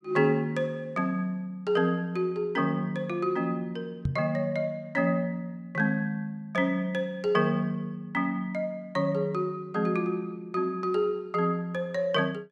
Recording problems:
microphone thump; at 4 s; peak +4 dB vs average level

